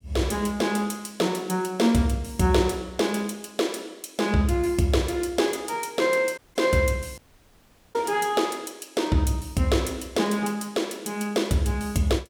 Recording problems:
audio cutting out; at 6.5 s and at 7 s for 1 s

